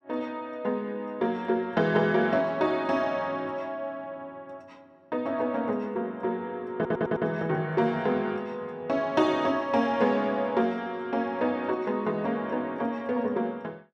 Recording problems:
stutter; at 7 s

